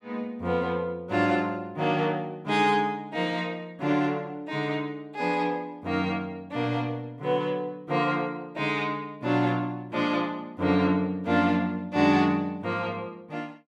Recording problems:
none

